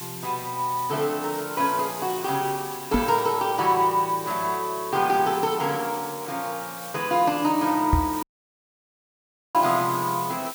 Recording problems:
hiss; slope +2 dB per octave, SNR 12 dB
knock on the microphone; at 3 s and at 8 s; peak +6 dB vs average level
audio cutting out; at 8 s for 1.5 s

